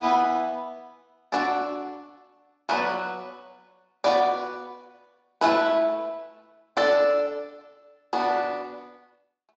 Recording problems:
lossy compression; Speex, log-spectral distance 3 dB

